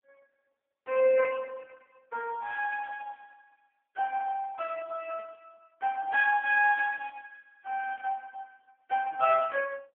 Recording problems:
phone line; 370 Hz to 2.5 kHz, AMR-NB

